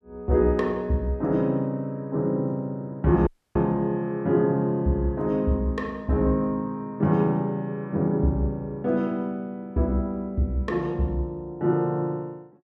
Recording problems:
dropout; at 3.5 s

